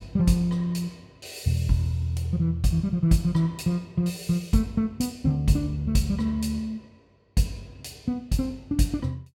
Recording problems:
none

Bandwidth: 17.5 kHz